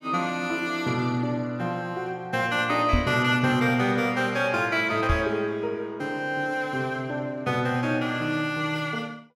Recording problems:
microphone thump; at 3 s and at 5 s; peak +5 dB vs average level

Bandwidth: 16.5 kHz